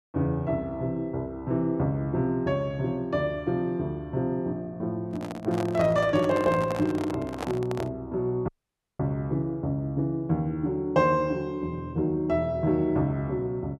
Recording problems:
microphone handling noise; from 5 to 8 s; peak -2 dB vs average level
dropout; at 8.5 s for 0.5 s

